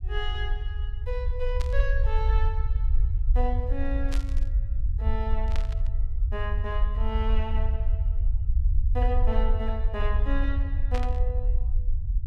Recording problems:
rumble; below 60 Hz, SNR -7 dB
burst of static; 4 times, first at 1.5 s; peak 0 dB vs average level

